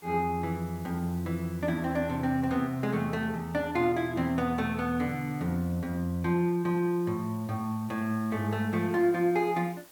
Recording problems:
hiss; slope -2 dB per octave, SNR 24 dB

